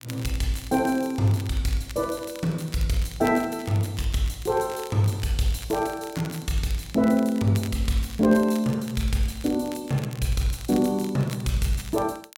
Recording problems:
crackle; vinyl, SNR 19 dB

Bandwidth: 16.5 kHz